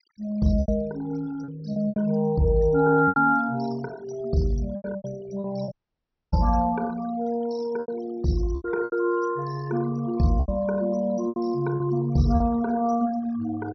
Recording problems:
low-pass filter; nothing above 5.9 kHz
noise reduction artefacts; signal-to-artefact ratio 20 dB
packet loss; 8% of the sound replaced, filled with repeated pitch periods
audio cutting out; at 5.5 s for 0.5 s

